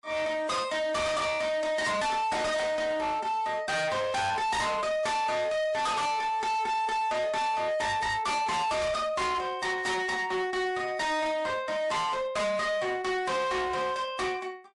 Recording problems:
lossy codec; MP3, log-spectral distance 2 dB, nothing above 11 kHz
distorted audio; hard clipping, signal-to-distortion ratio 6 dB

